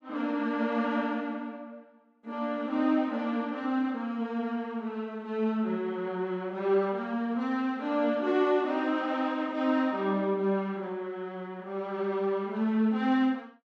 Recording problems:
none

